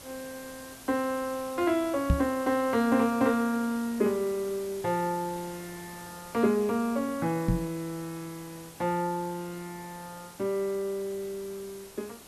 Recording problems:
hiss; slope -3 dB per octave, SNR 16 dB
microphone bump; at 2 s and at 7.5 s; peak +8 dB vs average level

